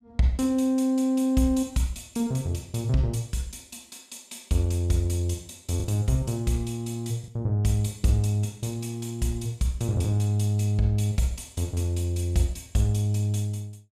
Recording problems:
packet loss; 0.3% of the sound replaced, filled with the last packet

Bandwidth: 14 kHz